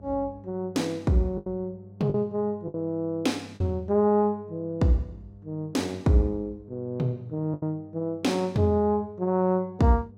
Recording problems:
hum; 50 Hz, harmonics up to 700 Hz, SNR 21 dB
packet loss; 3% of the sound replaced, filled with the last packet

